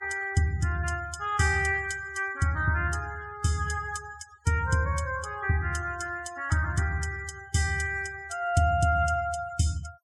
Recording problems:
denoising artefacts; signal-to-artefact ratio 23 dB

